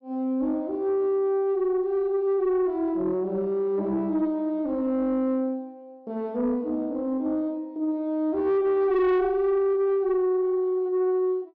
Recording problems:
distortion; soft clipping, signal-to-distortion ratio 12 dB

